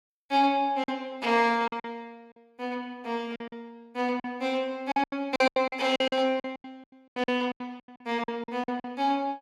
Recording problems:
lost packets; 14% of the sound replaced, filled with silence

